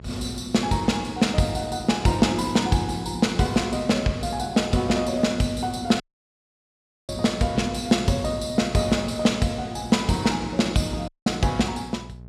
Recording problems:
electrical hum; 60 Hz, harmonics up to 660 Hz, SNR 19 dB
audio cutting out; at 6 s for 1 s and at 11 s

